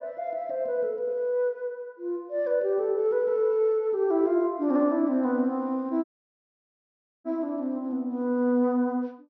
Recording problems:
treble cut off; nothing above 6.1 kHz
audio cutting out; at 6 s for 1 s

